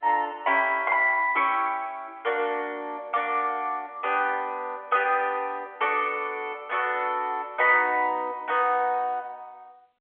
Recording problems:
telephone audio; 320 Hz to 3.2 kHz, G.711

